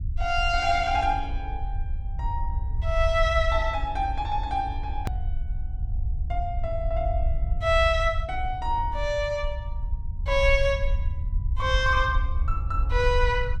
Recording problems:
rumble; below 68 Hz, SNR 4 dB
click at an edit; at 5 s

